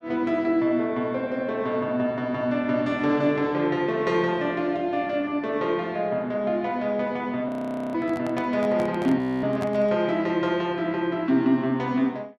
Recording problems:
audio freezing; at 7.5 s and at 9 s
microphone handling noise; from 8 to 10 s; peak -5 dB vs average level

